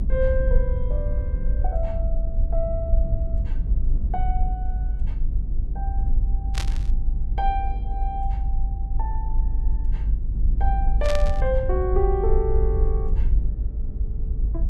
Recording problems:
low-frequency rumble; below 52 Hz, strongest tone 24 Hz, SNR -4 dB
static burst; at 6.5 s and at 11 s; peak +2 dB vs average level

